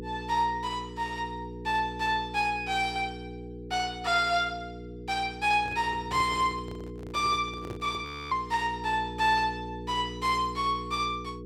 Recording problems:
electrical hum; 60 Hz, harmonics up to 480 Hz, SNR 12 dB
microphone handling noise; from 5.5 to 8 s; peak -7 dB vs average level
audio freezing; at 8 s

